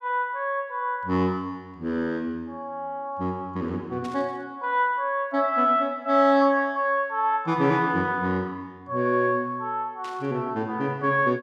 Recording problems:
static burst; at 4 s and at 10 s; peak -14 dB vs average level

